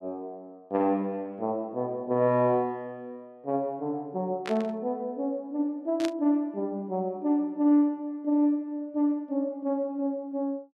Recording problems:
burst of static; at 4.5 s and at 6 s; peak -3 dB vs average level

